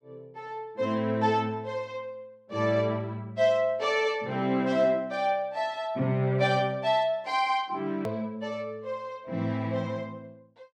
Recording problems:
edit click; at 8 s

